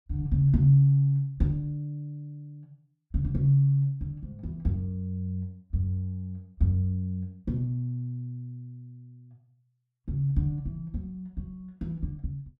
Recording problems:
none

